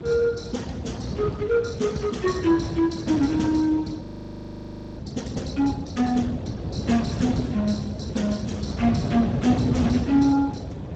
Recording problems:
lossy codec; Speex, log-spectral distance 4 dB, nothing above 7.3 kHz
hum; 50 Hz, harmonics up to 350 Hz, SNR 24 dB
wind on the microphone; below 340 Hz, SNR 7 dB
frozen audio; at 4 s for 1 s

